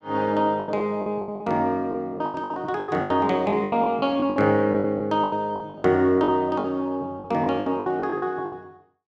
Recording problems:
lost packets; 17% of the sound replaced, filled with the last packet

